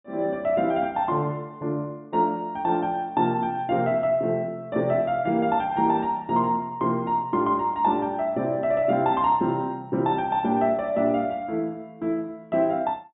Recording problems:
low-pass filter; nothing above 4 kHz

